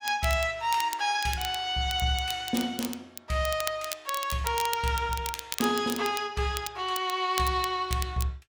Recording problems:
crackling; vinyl, SNR 10 dB

